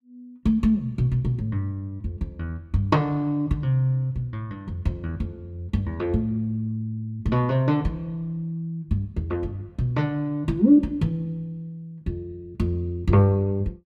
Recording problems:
none

